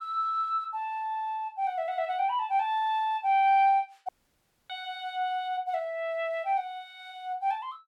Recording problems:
dropout; at 4 s for 0.5 s

